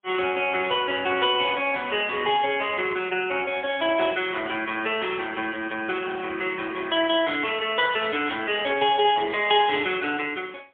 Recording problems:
telephone audio; 300 Hz to 3.4 kHz, AMR-NB, then MP3

